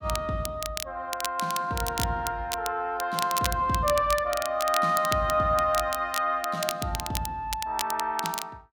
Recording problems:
crackle; vinyl, SNR 8 dB

